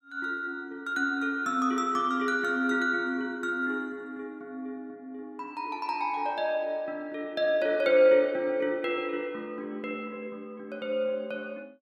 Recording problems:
none

